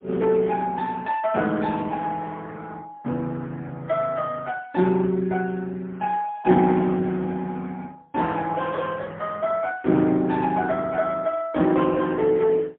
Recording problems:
telephone audio; 130 Hz to 3.3 kHz, AMR-NB, then MP3

